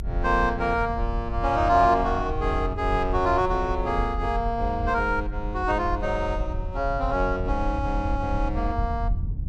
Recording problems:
rumble; below 80 Hz, SNR 6 dB

